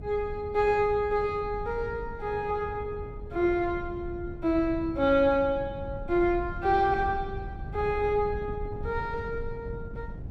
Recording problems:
wind on the microphone; below 130 Hz, SNR 12 dB

